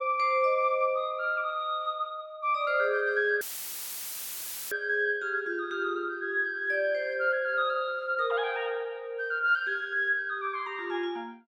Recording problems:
audio cutting out; at 3.5 s for 1.5 s; filled with static

